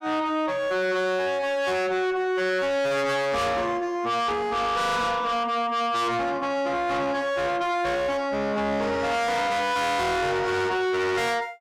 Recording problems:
distorted audio; soft clipping, signal-to-distortion ratio 6 dB

